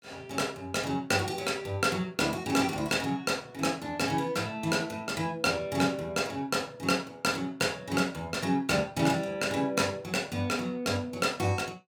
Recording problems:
none

